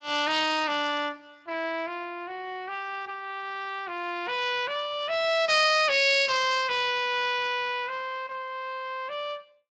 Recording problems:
lossy codec; Speex, log-spectral distance 4 dB, nothing above 7.6 kHz

